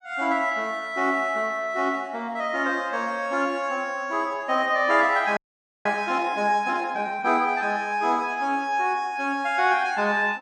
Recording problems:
audio freezing; at 5.5 s

